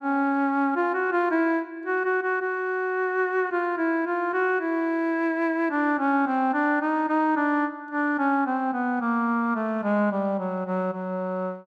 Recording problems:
none

